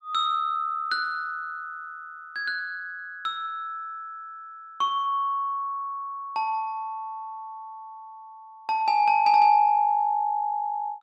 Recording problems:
none

